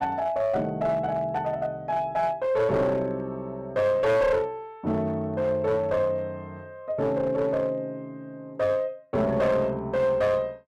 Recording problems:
distorted audio; hard clipping, uneven, signal-to-distortion ratio 11 dB

